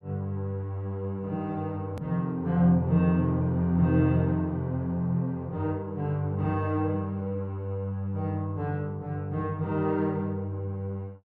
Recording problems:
edit click; at 2 s

